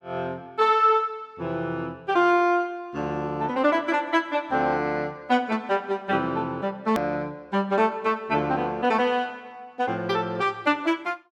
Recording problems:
edit click; at 7 s

